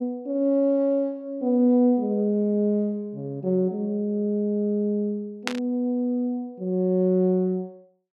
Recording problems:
burst of static; at 5.5 s; peak +2 dB vs average level

